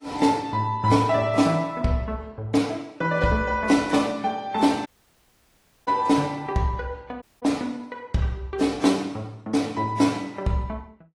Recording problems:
lossy codec; AAC, then AAC, log-spectral distance 3 dB, nothing above 11 kHz
audio cutting out; at 5 s for 1 s and at 7 s

